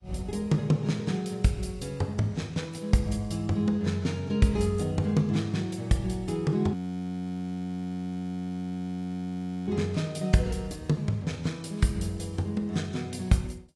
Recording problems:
codec artefacts; AAC, log-spectral distance 2 dB, nothing above 11.3 kHz
audio freezing; at 6.5 s for 3 s

